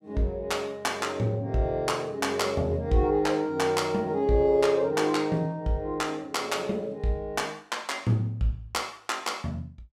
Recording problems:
none

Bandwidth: 16 kHz